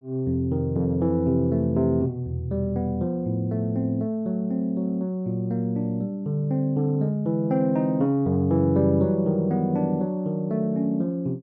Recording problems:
none

